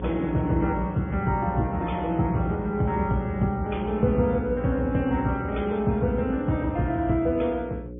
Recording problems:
low-pass filter; nothing above 3.5 kHz
lossy codec; MP3, log-spectral distance 2 dB
hum; 60 Hz, harmonics up to 540 Hz, SNR 12 dB

